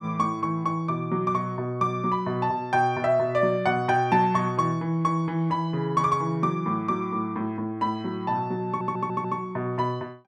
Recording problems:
stutter; at 8.5 s

